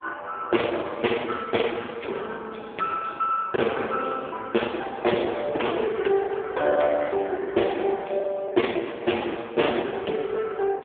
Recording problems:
phone line; 260 Hz to 3.5 kHz, AMR-NB
lost packets; 14% of the sound replaced, filled with the last packet

